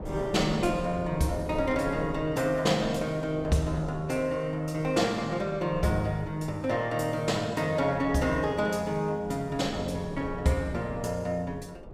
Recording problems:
wind on the microphone; below 480 Hz, SNR 13 dB

